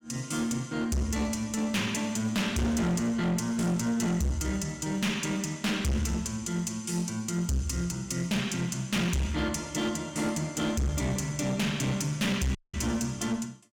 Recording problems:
distortion; hard clipping, uneven, signal-to-distortion ratio 7 dB
audio cutting out; at 13 s

